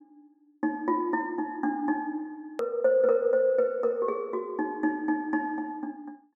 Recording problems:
click at an edit; at 2.5 s

